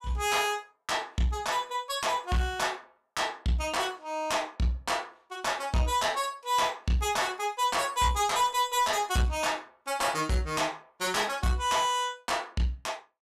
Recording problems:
distortion; soft clipping, signal-to-distortion ratio 11 dB

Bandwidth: 14.5 kHz